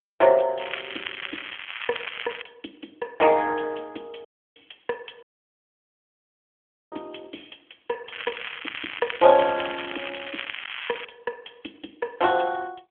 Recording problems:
phone line; 240 Hz to 3.4 kHz, AMR-NB
crackle; from 0.5 to 2.5 s and from 8 to 11 s; loose cable, SNR 8 dB
audio cutting out; at 4.5 s and at 5 s for 1.5 s

